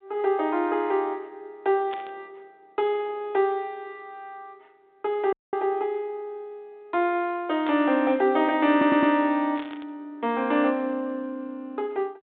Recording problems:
phone line; 150 Hz to 3.9 kHz, G.726
burst of static; at 2 s, at 7.5 s and at 9.5 s; peak -10 dB vs average level
dropout; at 5.5 s
audio stuttering; at 8.5 s

